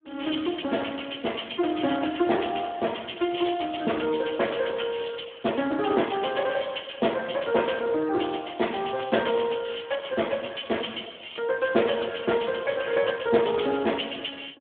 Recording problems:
telephone audio; 260 Hz to 3.4 kHz, Speex

